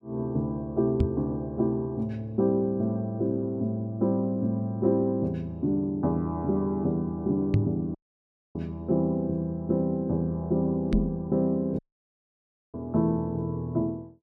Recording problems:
microphone thump; at 1 s, at 7.5 s and at 11 s; peak +7 dB vs average level
audio cutting out; at 8 s for 0.5 s and at 12 s for 1 s

